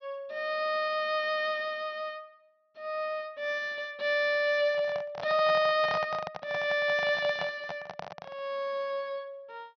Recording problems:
treble cut off; nothing above 6.1 kHz
handling noise; from 4.5 to 8.5 s; peak -1 dB vs average level

